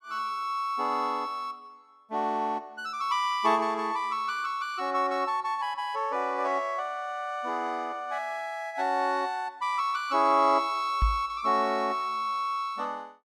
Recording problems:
microphone bump; at 11 s; peak +5 dB vs average level

